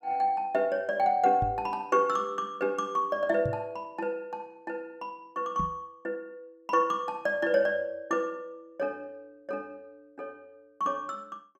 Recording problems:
microphone bump; at 1.5 s, at 3.5 s and at 5.5 s; peak 0 dB vs average level

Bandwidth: 14.5 kHz